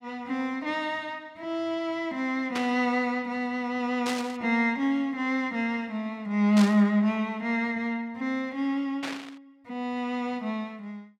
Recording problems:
burst of static; 4 times, first at 2.5 s; peak -1 dB vs average level

